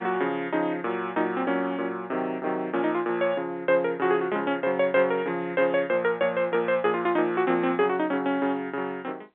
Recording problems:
phone line; 260 Hz to 3.7 kHz, G.711

